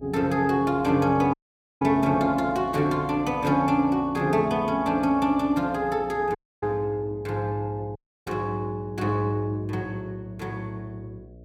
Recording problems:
hum; 60 Hz, harmonics up to 660 Hz, SNR 22 dB
audio cutting out; at 1.5 s, at 6.5 s and at 8 s

